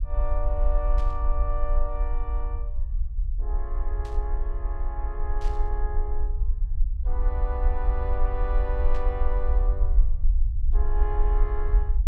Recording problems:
rumble; below 48 Hz, SNR -8 dB
static burst; 4 times, first at 1 s; peak -8 dB vs average level

